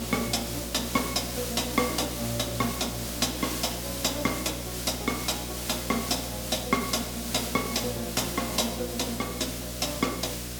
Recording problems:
mains hum; 60 Hz, harmonics up to 720 Hz, SNR 9 dB
hiss; slope +1 dB per octave, SNR 5 dB

